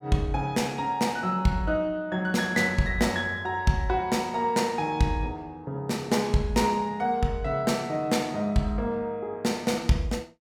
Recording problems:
none

